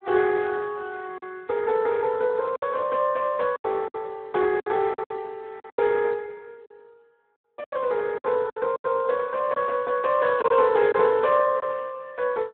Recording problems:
phone line; 110 Hz to 2.6 kHz, Speex
packet loss; 8% of the sound replaced, filled with silence

